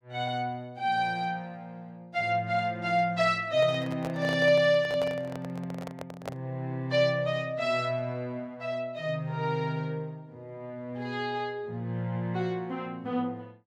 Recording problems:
handling noise; from 3.5 to 6.5 s; peak -3 dB vs average level

